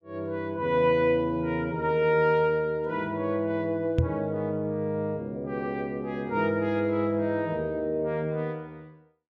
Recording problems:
knock on the microphone; at 4 s; peak +6 dB vs average level

